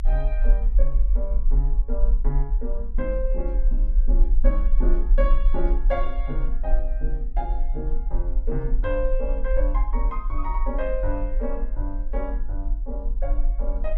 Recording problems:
low-frequency rumble; below 42 Hz, SNR -6 dB

